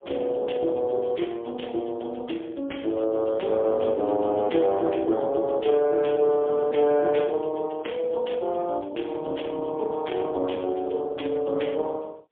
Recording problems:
telephone audio; 260 Hz to 3.3 kHz, AMR-NB, then MP3

